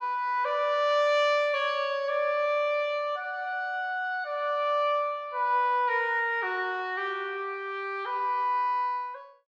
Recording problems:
none

